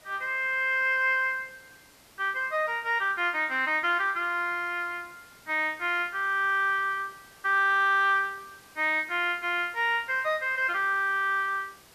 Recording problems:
background hiss; slope -2 dB per octave, SNR 27 dB

